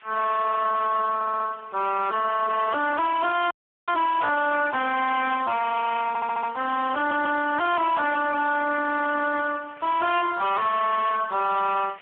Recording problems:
telephone audio; 260 Hz to 3.8 kHz, Speex
distorted audio; hard clipping, signal-to-distortion ratio 5 dB
hiss; SNR 24 dB
stutter; at 1 s, at 6 s and at 7 s
audio freezing; at 3.5 s

